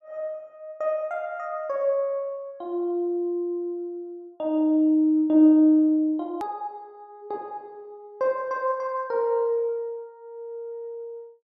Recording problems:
hard cut with a click; at 6.5 s

